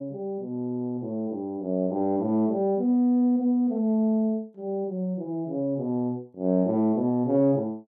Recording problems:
none

